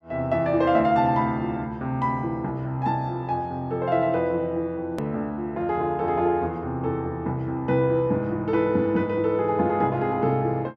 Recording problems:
edit click; at 5 s

